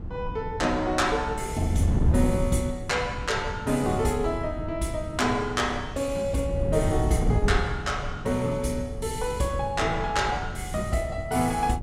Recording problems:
wind noise; below 160 Hz, SNR 5 dB

